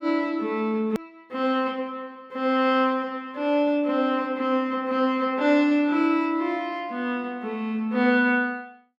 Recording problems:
hard cut with a click; at 1 s

